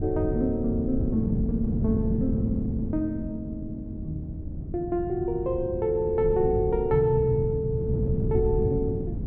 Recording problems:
wind noise; below 190 Hz, SNR 4 dB

